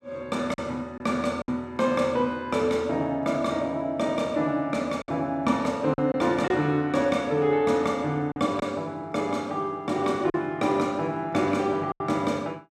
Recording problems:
lost packets; 3% of the sound replaced, filled with silence

